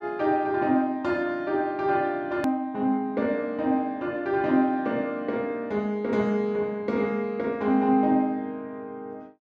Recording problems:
click at an edit; at 2.5 s

